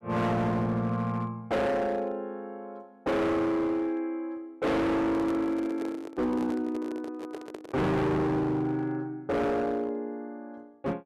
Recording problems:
distorted audio; hard clipping, signal-to-distortion ratio 6 dB
microphone handling noise; from 5 to 8 s; peak -5 dB vs average level

